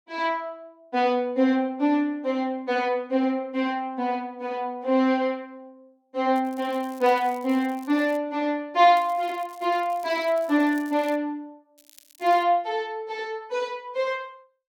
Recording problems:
crackling; from 6.5 to 8 s, from 9 to 11 s and at 12 s; loose cable, SNR 27 dB

